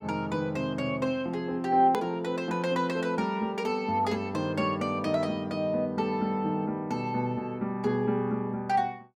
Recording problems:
hard cut with a click; at 2 s

